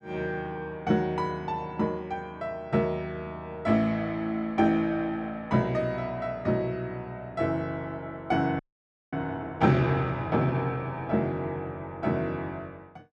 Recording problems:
audio freezing; at 8.5 s for 0.5 s

